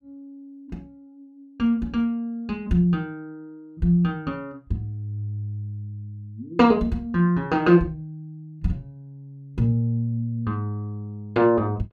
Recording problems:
none

